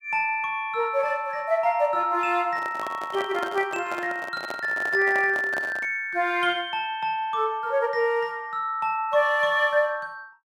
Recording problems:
handling noise; from 2.5 to 6 s; peak -5 dB vs average level

